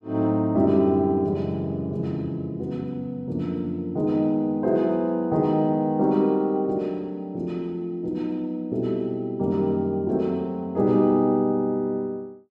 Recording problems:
none

